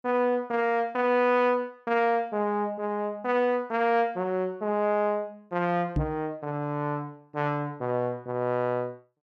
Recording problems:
microphone bump; at 6 s; peak +3 dB vs average level

